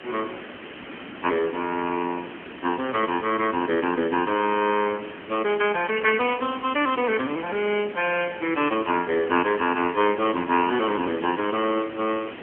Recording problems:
telephone audio; 170 Hz to 3.2 kHz, AMR-NB
background hiss; SNR 14 dB

